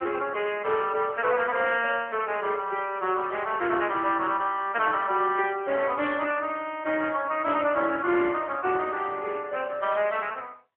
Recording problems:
telephone audio; 240 Hz to 3.2 kHz, AMR-NB

